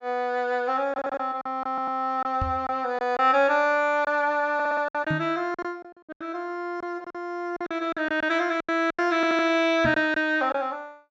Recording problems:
treble missing; nothing above 8 kHz
packet loss; 9% of the sound replaced, filled with silence
stutter; 4 times, first at 1 s
knock on the microphone; at 2.5 s, at 5 s and at 10 s; peak 0 dB vs average level

